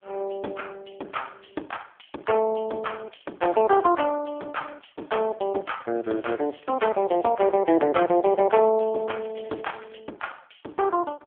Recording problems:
phone line; 240 Hz to 3.4 kHz, AMR-NB
crackle; from 6 to 7.5 s and at 9 s; loose cable, SNR 28 dB

